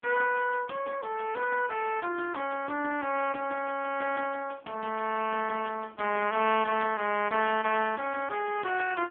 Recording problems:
phone line; 240 Hz to 3.3 kHz, AMR-NB

